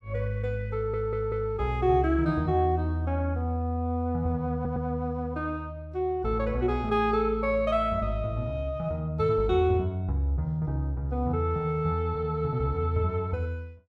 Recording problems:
stutter; at 1 s and at 4.5 s

